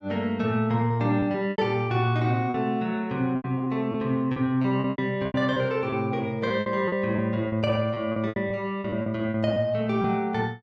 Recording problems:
lost packets; 11% of the sound replaced, filled with repeated pitch periods

